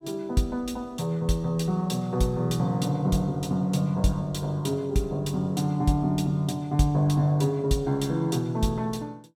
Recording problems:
none

